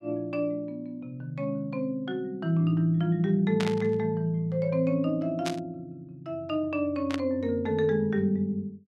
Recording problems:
burst of static; at 3.5 s, at 5.5 s and at 7 s; peak -1 dB vs average level

